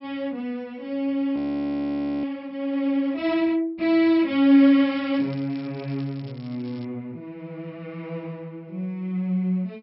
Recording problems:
treble missing; nothing above 5.4 kHz
audio freezing; at 1.5 s for 1 s
crackle; from 5 to 7 s; loose cable, SNR 27 dB

